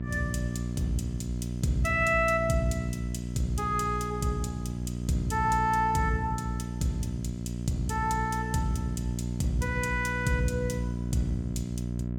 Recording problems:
hum; 60 Hz, harmonics up to 660 Hz, SNR 4 dB

